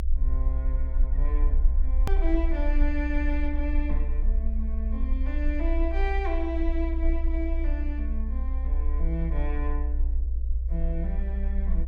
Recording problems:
hum; 60 Hz, harmonics up to 600 Hz, SNR 26 dB
rumble; below 60 Hz, strongest tone 28 Hz, SNR -6 dB
hard cut with a click; at 2 s

